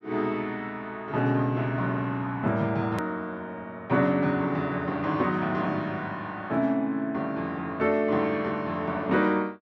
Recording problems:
hard cut with a click; at 3 s

